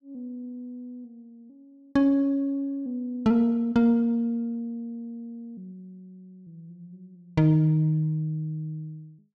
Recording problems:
none

